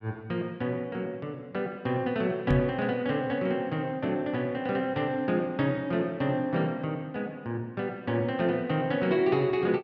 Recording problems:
microphone bump; at 2.5 s; peak +6 dB vs average level

